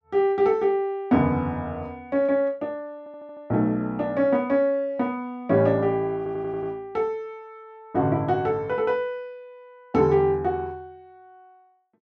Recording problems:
audio stuttering; at 3 s and at 6 s

